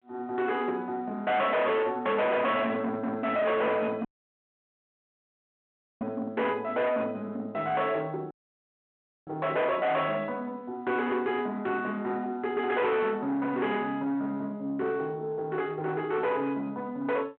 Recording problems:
telephone audio; 240 Hz to 3.3 kHz, G.726
distorted audio; soft clipping, signal-to-distortion ratio 7 dB
dropout; at 4 s for 2 s and at 8.5 s for 1 s

